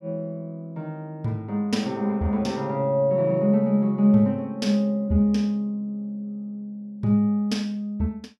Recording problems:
none

